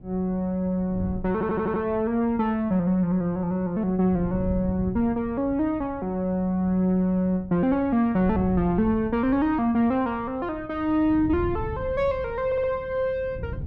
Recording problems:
wind on the microphone; below 150 Hz, SNR 14 dB
audio stuttering; at 1.5 s and at 12 s

